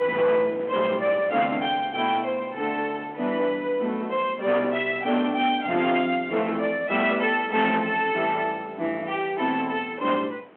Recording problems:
phone line; 220 Hz to 3.4 kHz, G.726
distorted audio; soft clipping, signal-to-distortion ratio 12 dB
wind noise; below 1.1 kHz, SNR 21 dB

